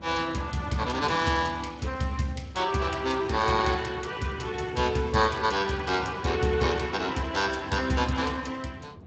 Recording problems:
lossy codec; Speex, log-spectral distance 5 dB, nothing above 7.3 kHz
wind on the microphone; below 360 Hz, SNR 16 dB

